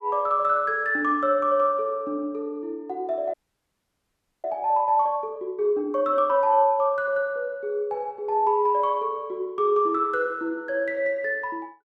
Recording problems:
frozen audio; at 3.5 s for 1 s

